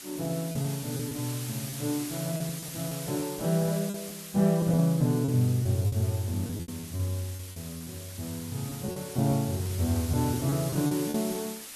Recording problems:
background hiss; SNR 10 dB
lost packets; 9% of the sound replaced, filled with repeated pitch periods

